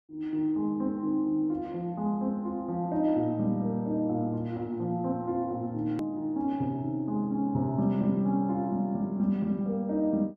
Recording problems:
edit click; at 6 s

